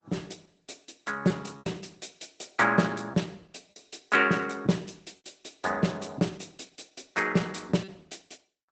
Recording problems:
lossy codec; Opus, log-spectral distance 7 dB, nothing above 8 kHz
lost packets; 4% of the sound replaced, filled with repeated pitch periods

